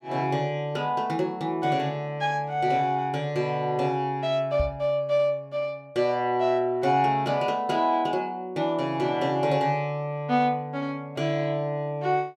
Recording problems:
knock on the microphone; at 4.5 s; peak 0 dB vs average level

